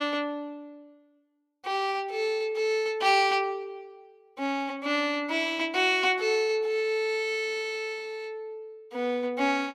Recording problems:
none

